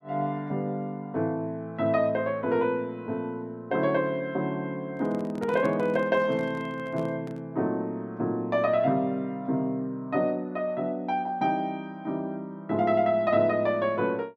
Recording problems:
handling noise; from 5 to 7.5 s; peak -7 dB vs average level

